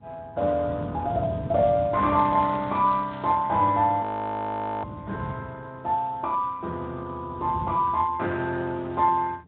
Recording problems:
treble cut off; nothing above 3.7 kHz
lossy compression; Speex, log-spectral distance 3 dB
wind on the microphone; below 220 Hz, SNR 12 dB
crackle; from 2 to 3.5 s; loose cable, SNR 26 dB
audio freezing; at 4 s for 1 s

